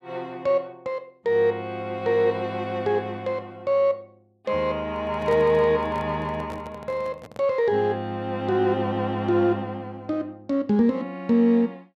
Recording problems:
handling noise; from 5 to 7.5 s; peak -9 dB vs average level

